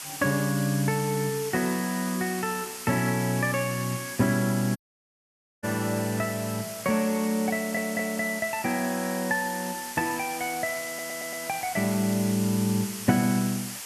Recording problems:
hiss; slope +1 dB per octave, SNR 9 dB
audio cutting out; at 5 s for 1 s
stutter; at 7.5 s and at 11 s

